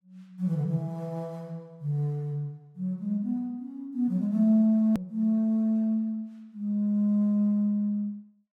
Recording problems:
edit click; at 5 s

